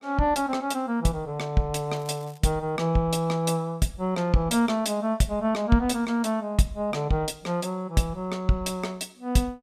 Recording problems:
crackle; at 2 s; loose cable, SNR 27 dB

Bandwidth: 14.5 kHz